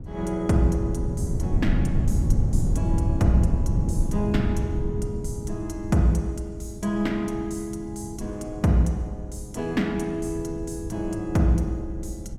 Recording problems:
wind noise; below 130 Hz, SNR 2 dB

